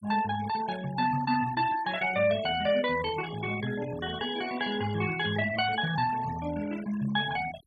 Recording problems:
denoising artefacts; signal-to-artefact ratio 14 dB

